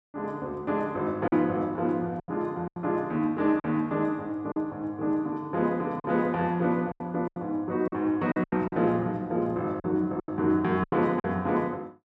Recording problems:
packet loss; 8% of the sound replaced, filled with silence

